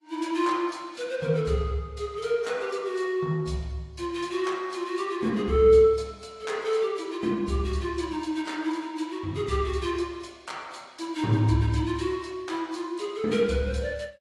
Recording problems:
lossy codec; AAC, log-spectral distance 2 dB, nothing above 11 kHz

